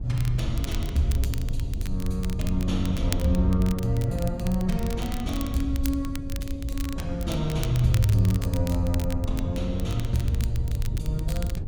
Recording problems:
wind on the microphone; below 90 Hz, SNR 4 dB
crackling; vinyl, SNR 14 dB

